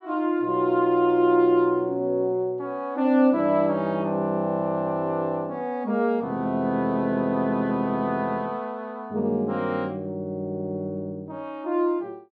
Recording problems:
none

